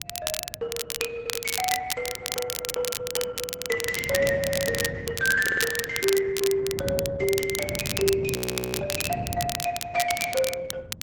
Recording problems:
lossy codec; Opus, log-spectral distance 3 dB, nothing above 17.7 kHz
wind noise; below 190 Hz, SNR 9 dB
crackling; vinyl, SNR 3 dB
audio stuttering; 4 times, first at 1 s
frozen audio; at 8.5 s

